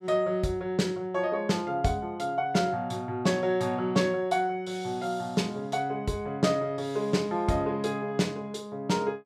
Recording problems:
none

